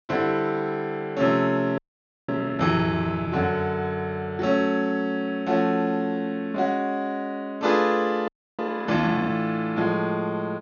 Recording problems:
treble missing; nothing above 6.7 kHz
frozen audio; at 2 s and at 8.5 s

